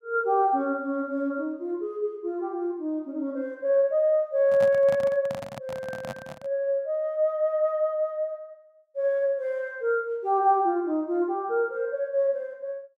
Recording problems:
handling noise; from 4.5 to 6.5 s; peak -6 dB vs average level

